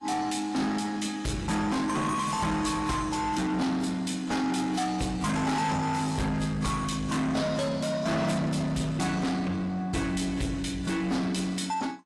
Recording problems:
codec artefacts; AAC, log-spectral distance 3 dB, nothing above 11 kHz
distorted audio; soft clipping, signal-to-distortion ratio 6 dB

